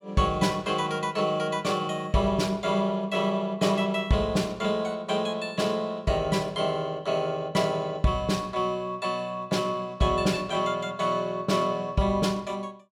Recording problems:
none

